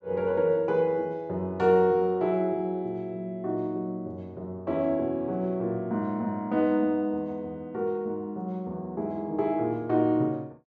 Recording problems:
none

